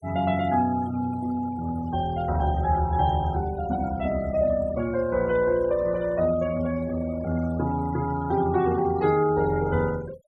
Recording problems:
noise reduction artefacts; signal-to-artefact ratio 20 dB

